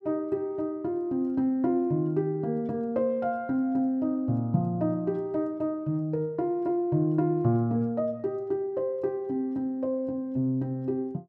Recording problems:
none

